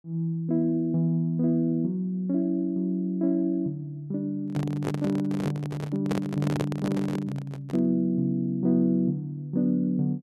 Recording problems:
handling noise; from 4.5 to 8 s; peak +2 dB vs average level

